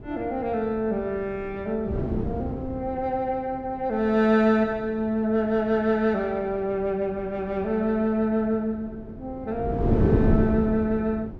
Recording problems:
wind noise; below 350 Hz, SNR 2 dB

